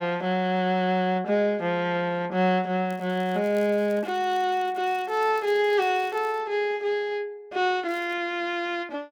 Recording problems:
crackling; from 3 to 6.5 s and at 8 s; loose cable, SNR 28 dB

